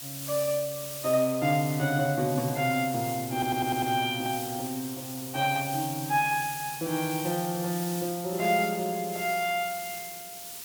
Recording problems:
background hiss; SNR 9 dB
audio stuttering; at 3.5 s

